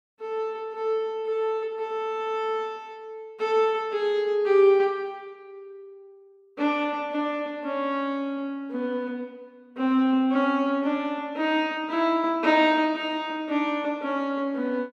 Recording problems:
none

